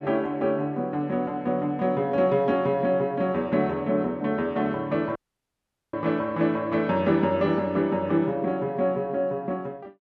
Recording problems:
audio cutting out; at 5 s for 1 s

